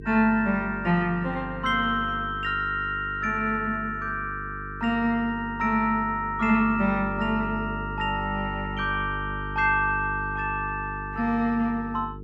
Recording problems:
electrical hum; 50 Hz, harmonics up to 450 Hz, SNR 12 dB

